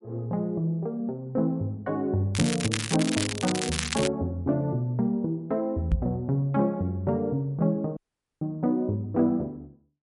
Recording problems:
codec artefacts; MP3, log-spectral distance 2 dB, nothing above 13.1 kHz
crackle; from 2.5 to 4 s; loose cable, SNR 3 dB
microphone bump; at 6 s; peak +6 dB vs average level
dropout; at 8 s

